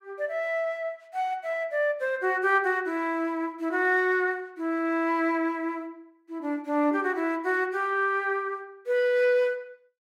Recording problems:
none

